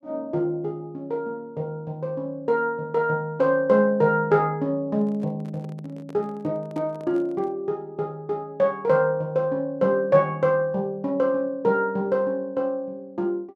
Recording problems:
handling noise; from 5 to 7.5 s; peak -12 dB vs average level

